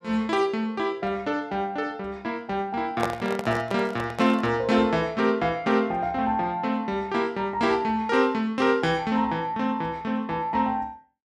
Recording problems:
microphone handling noise; from 3 to 4.5 s; peak +2 dB vs average level

